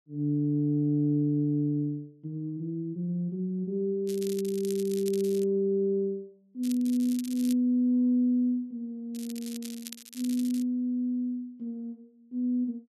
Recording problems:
crackle; from 4 to 5.5 s, at 6.5 s and from 9 to 11 s; loose cable, SNR 16 dB

